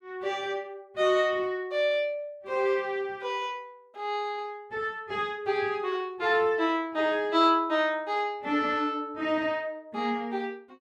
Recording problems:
none

